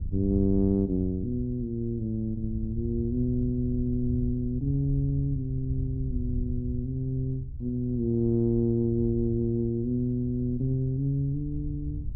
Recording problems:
wind noise; below 86 Hz, SNR 9 dB

